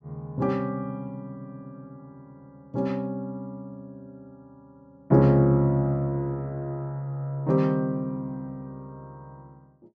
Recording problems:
treble cut off; nothing above 8 kHz

